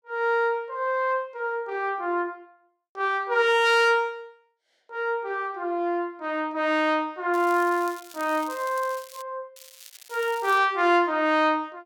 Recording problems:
crackling; from 7.5 to 9 s and from 9.5 to 11 s; loose cable, SNR 20 dB

